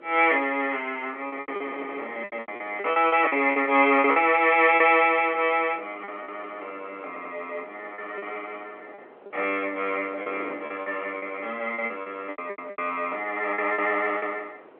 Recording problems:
phone line; 340 Hz to 3.4 kHz, G.711
wind on the microphone; below 810 Hz, SNR 22 dB
packet loss; 11% of the sound replaced, filled with repeated pitch periods
stutter; at 7 s

